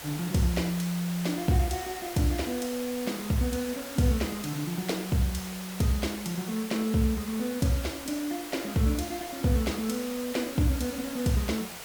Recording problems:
hiss; SNR 10 dB

